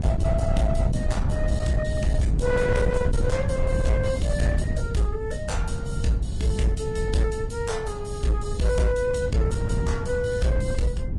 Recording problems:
lossy codec; Vorbis, log-spectral distance 2 dB, nothing above 10.4 kHz
distorted audio; hard clipping, signal-to-distortion ratio 12 dB
wind noise; below 130 Hz, SNR 2 dB

